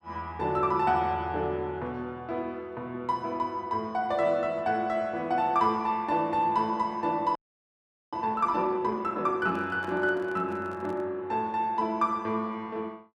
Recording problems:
audio freezing; at 7.5 s for 1 s
microphone handling noise; from 9.5 to 11 s; peak -11 dB vs average level

